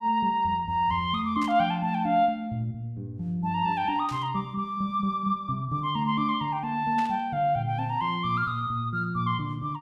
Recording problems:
burst of static; at 1.5 s, at 4 s and at 7 s; peak -10 dB vs average level

